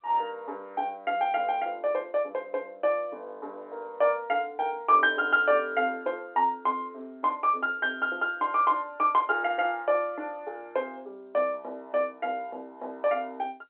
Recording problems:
phone line; 320 Hz to 3.6 kHz, G.711

